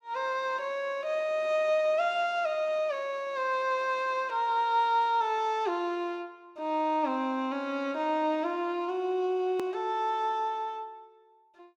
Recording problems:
hard cut with a click; at 9.5 s

